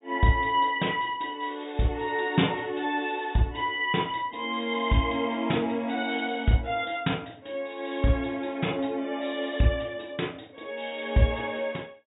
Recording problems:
treble cut off; nothing above 4 kHz

